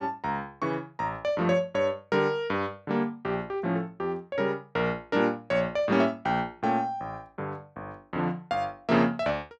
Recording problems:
none

